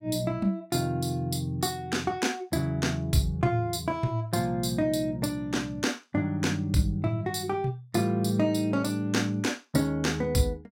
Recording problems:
none

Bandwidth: 16 kHz